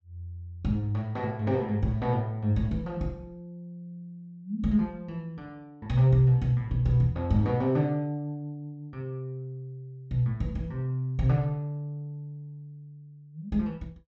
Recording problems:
treble cut off; nothing above 8 kHz

